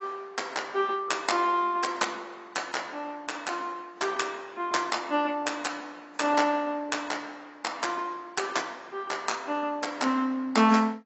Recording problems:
lossy codec; AAC, log-spectral distance 4 dB, nothing above 7.8 kHz

